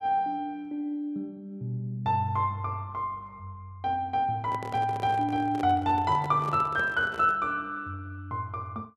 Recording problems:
handling noise; from 4.5 to 7.5 s; peak -6 dB vs average level

